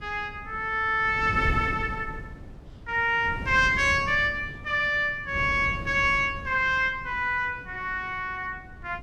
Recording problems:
wind on the microphone; below 200 Hz, SNR 14 dB

